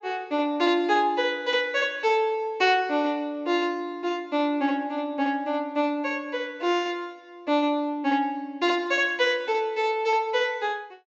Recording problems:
treble cut off; nothing above 8 kHz

